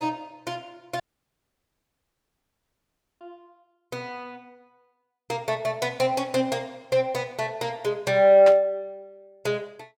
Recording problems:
audio cutting out; at 1 s for 2 s
burst of static; at 8.5 s; peak -4 dB vs average level

